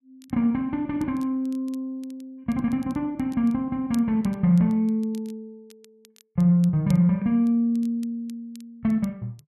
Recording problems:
crackling; vinyl, SNR 29 dB

